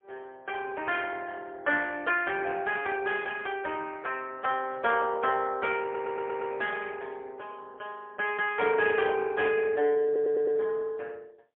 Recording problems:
telephone audio; 300 Hz to 3.3 kHz, AMR-NB, then MP3
stutter; at 6 s and at 10 s

